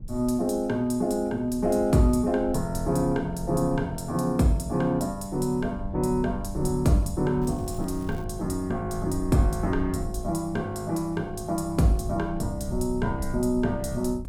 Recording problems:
low-frequency rumble; below 80 Hz, SNR 13 dB
crackle; at 7.5 s; loose cable, SNR 29 dB

